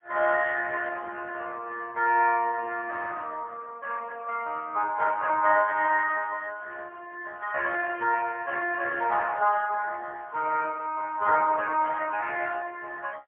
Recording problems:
phone line; 280 Hz to 3.1 kHz, AMR-NB, then MP3

